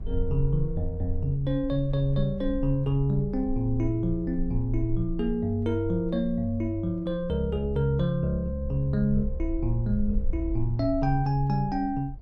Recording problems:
rumble; below 50 Hz, strongest tone 24 Hz, SNR 10 dB

